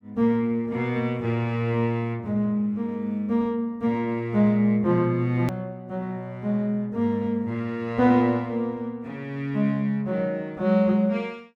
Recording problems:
edit click; at 5.5 s

